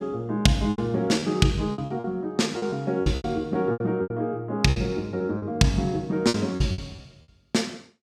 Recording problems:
lost packets; 13% of the sound replaced, filled with repeated pitch periods

